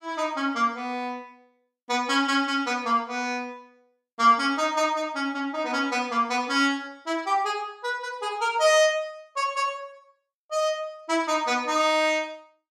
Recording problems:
none

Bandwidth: 15 kHz